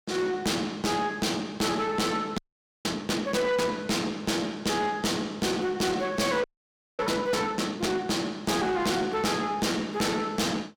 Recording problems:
distortion; soft clipping, signal-to-distortion ratio 7 dB
audio freezing; at 2.5 s and at 6.5 s for 0.5 s

